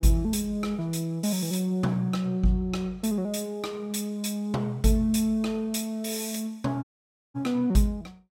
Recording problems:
audio cutting out; at 7 s for 0.5 s

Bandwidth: 16.5 kHz